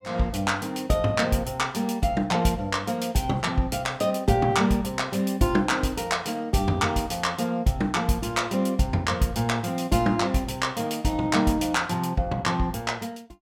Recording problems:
none

